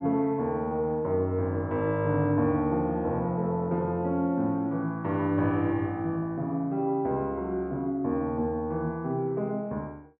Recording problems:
none

